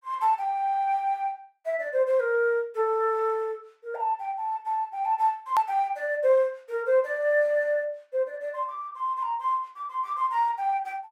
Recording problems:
click at an edit; at 5.5 s

